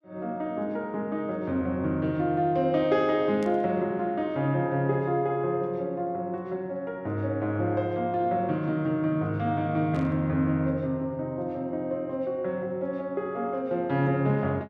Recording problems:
burst of static; at 3.5 s and at 10 s; peak -15 dB vs average level

